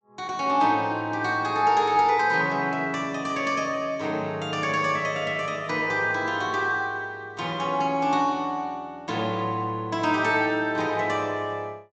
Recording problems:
treble missing; nothing above 8 kHz

